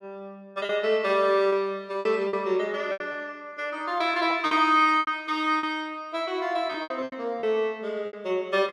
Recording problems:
lost packets; 9% of the sound replaced, filled with repeated pitch periods

